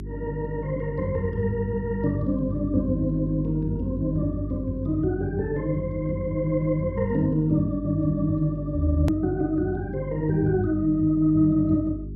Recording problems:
hum; 50 Hz, harmonics up to 400 Hz, SNR 10 dB
hard cut with a click; at 9 s

